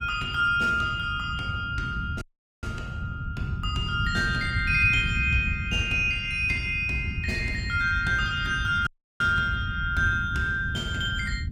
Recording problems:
lossy codec; Opus, log-spectral distance 2 dB, nothing above 19 kHz
rumble; below 140 Hz, SNR 8 dB
audio cutting out; at 2 s and at 9 s

